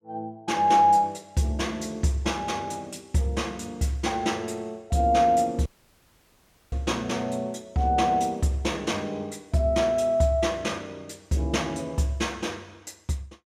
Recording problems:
audio cutting out; at 5.5 s for 1 s

